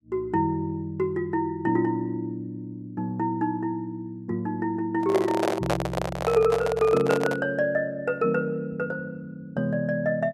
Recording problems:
microphone handling noise; from 5 to 7.5 s; peak +4 dB vs average level

